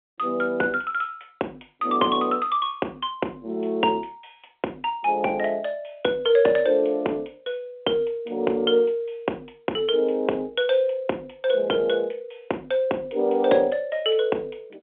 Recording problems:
phone line; 240 Hz to 3.4 kHz, G.711

